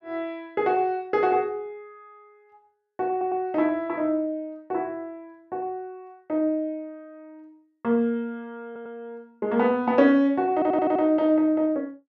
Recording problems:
audio stuttering; at 3 s, at 8.5 s and at 11 s

